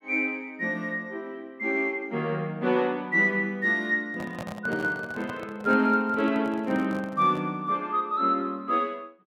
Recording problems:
handling noise; from 4 to 7.5 s; peak -7 dB vs average level

